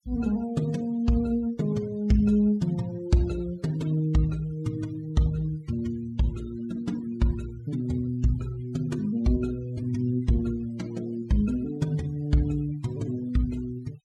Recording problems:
denoising artefacts; signal-to-artefact ratio 23 dB

